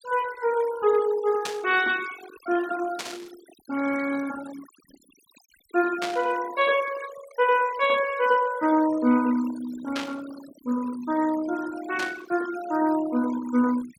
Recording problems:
noise reduction artefacts; signal-to-artefact ratio 15 dB
static burst; 5 times, first at 1.5 s; peak -2 dB vs average level

